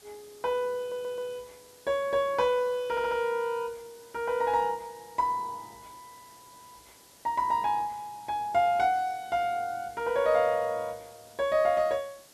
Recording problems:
background hiss; SNR 24 dB
audio stuttering; at 1 s and at 3 s

